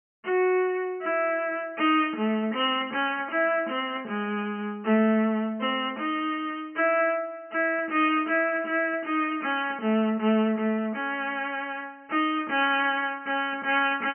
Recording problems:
treble missing; nothing above 3.1 kHz

